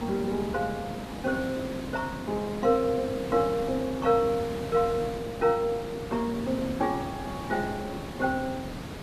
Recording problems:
background hiss; slope -6 dB per octave, SNR 9 dB

